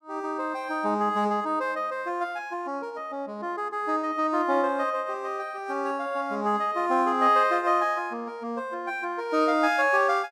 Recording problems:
none

